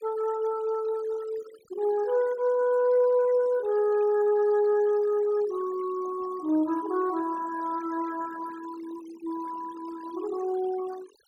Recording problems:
denoising artefacts; signal-to-artefact ratio 21 dB

